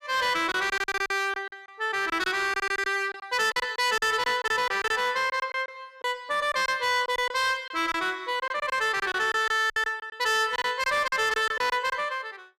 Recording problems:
distortion; hard clipping, uneven, signal-to-distortion ratio 11 dB
packet loss; 11% of the sound replaced, filled with silence

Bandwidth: 15 kHz